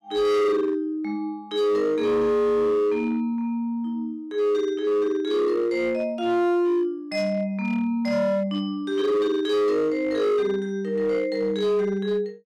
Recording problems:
distortion; hard clipping, signal-to-distortion ratio 10 dB

